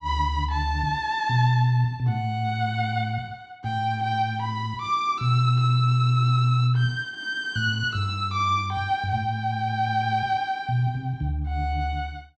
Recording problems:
none

